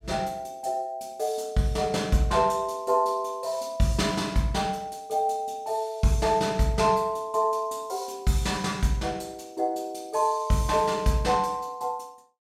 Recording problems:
none

